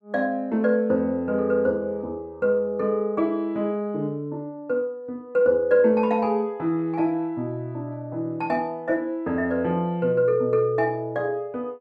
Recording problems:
none

